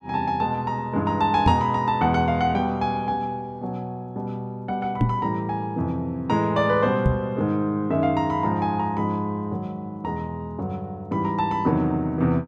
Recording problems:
microphone thump; at 1.5 s, at 5 s and at 7 s; peak +7 dB vs average level

